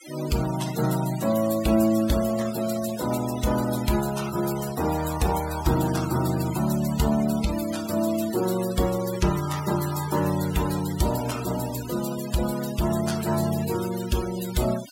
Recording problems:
noise reduction artefacts; signal-to-artefact ratio 12 dB

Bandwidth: 16 kHz